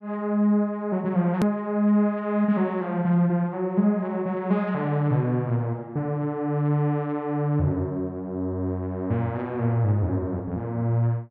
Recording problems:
edit click; at 1.5 s

